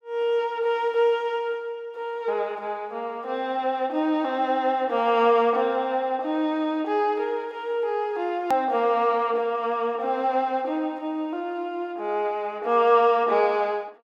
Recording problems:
click at an edit; at 8.5 s

